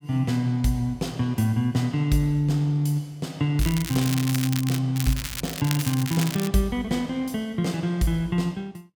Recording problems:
crackling; from 3.5 to 5 s and from 5 to 6.5 s; loose cable, SNR 8 dB

